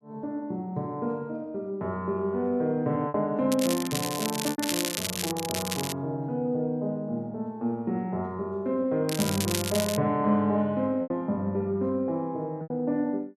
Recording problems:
packet loss; 2% of the sound replaced, filled with repeated pitch periods
crackling; from 3.5 to 6 s and at 9 s; loose cable, SNR 3 dB

